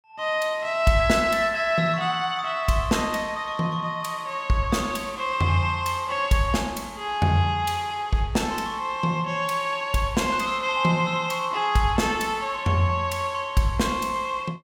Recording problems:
none

